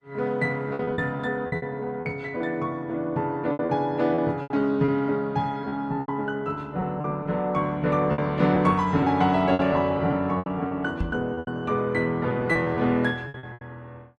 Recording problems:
lossy codec; Opus, log-spectral distance 2 dB, nothing above 13.1 kHz
packet loss; 10% of the sound replaced, filled with repeated pitch periods
microphone bump; at 11 s; peak +1 dB vs average level

